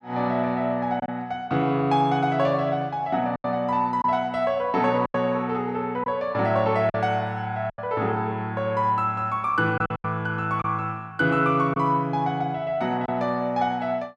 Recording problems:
lost packets; 4% of the sound replaced, filled with silence

